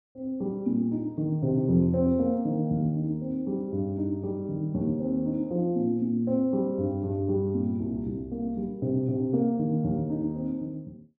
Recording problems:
none

